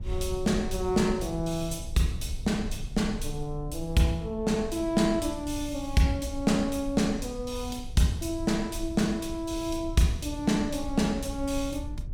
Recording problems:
rumble; below 80 Hz, SNR 11 dB

